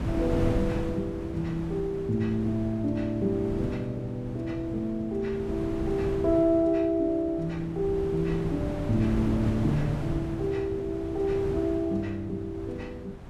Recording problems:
wind on the microphone; below 310 Hz, SNR 7 dB

